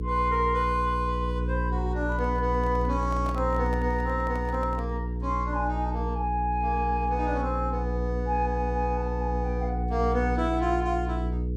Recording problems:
hum; 60 Hz, harmonics up to 480 Hz, SNR 2 dB
handling noise; from 2 to 5 s; peak -7 dB vs average level

